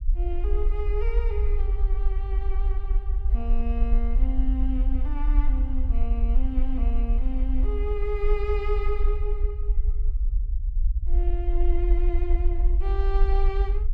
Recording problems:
low-frequency rumble; below 50 Hz, SNR -8 dB

